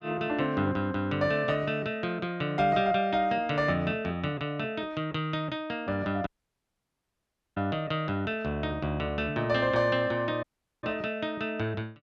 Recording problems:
audio cutting out; at 6.5 s for 1.5 s and at 10 s

